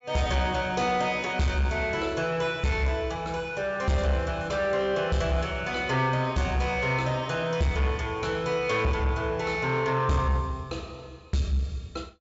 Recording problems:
low-pass filter; nothing above 8 kHz
distorted audio; soft clipping, signal-to-distortion ratio 11 dB

